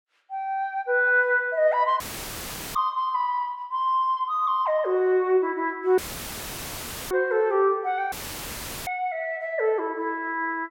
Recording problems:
dropout; at 2 s for 1 s, at 6 s for 1 s and at 8 s for 1 s; filled with static

